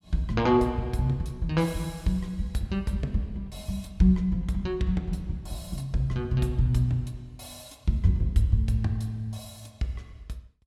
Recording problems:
none

